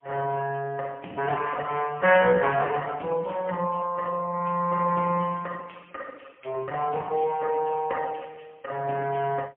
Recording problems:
telephone audio; 220 Hz to 3.3 kHz, AMR-NB, then MP3

